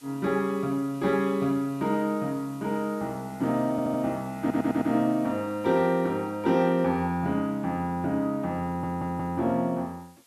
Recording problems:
hiss; slope +1 dB per octave, SNR 27 dB
stutter; at 3.5 s, at 4.5 s and at 8.5 s

